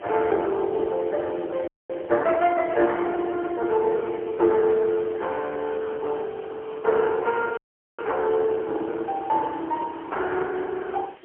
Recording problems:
phone line; 300 Hz to 3.6 kHz, AMR-NB, then MP3
background hiss; SNR 28 dB
wind on the microphone; below 440 Hz, SNR 16 dB
frozen audio; at 1.5 s and at 7.5 s

